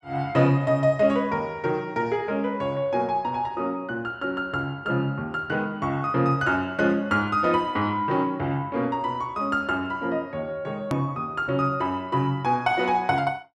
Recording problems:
hard cut with a click; at 11 s

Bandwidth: 12 kHz